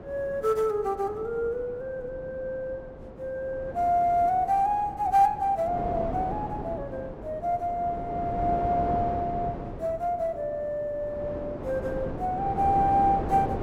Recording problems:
wind noise; below 570 Hz, SNR 9 dB

